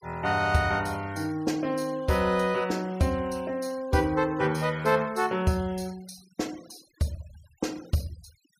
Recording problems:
denoising artefacts; signal-to-artefact ratio 24 dB

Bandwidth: 15.5 kHz